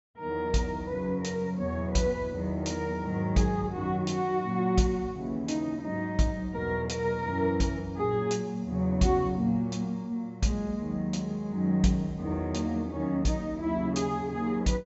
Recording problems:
low-pass filter; nothing above 8 kHz

